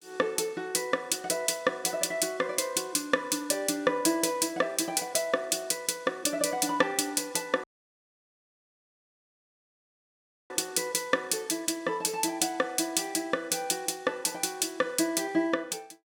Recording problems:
dropout; at 7.5 s for 3 s

